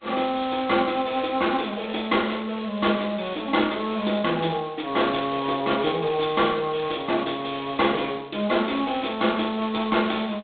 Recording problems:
phone line; 170 Hz to 3.9 kHz, G.726

